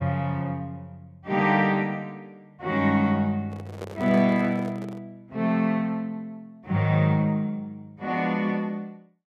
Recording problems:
handling noise; from 3.5 to 5 s; peak -7 dB vs average level

